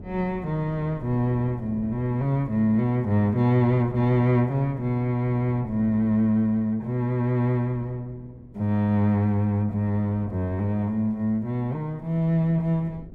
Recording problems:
wind on the microphone; below 260 Hz, SNR 21 dB

